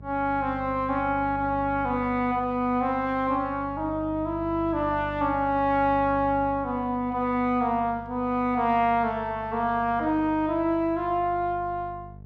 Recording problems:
electrical hum; 50 Hz, harmonics up to 650 Hz, SNR 16 dB

